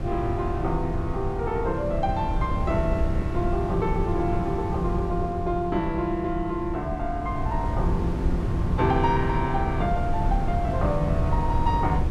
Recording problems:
wind noise; below 140 Hz, SNR 2 dB

